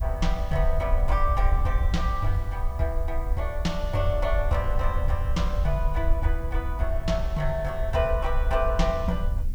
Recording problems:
hiss; slope -1 dB per octave, SNR 26 dB
rumble; below 58 Hz, SNR 1 dB
wind noise; below 70 Hz, SNR 5 dB

